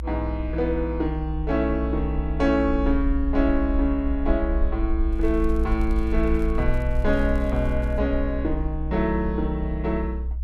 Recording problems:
rumble; below 60 Hz, SNR 3 dB
crackling; from 5 to 8 s; loose cable, SNR 30 dB

